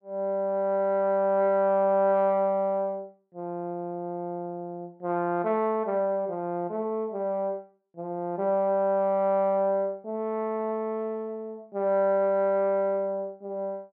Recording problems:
none

